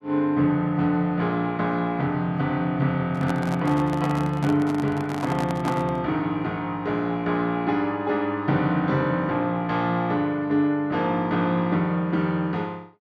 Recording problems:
microphone handling noise; from 3 to 6 s; peak -1 dB vs average level

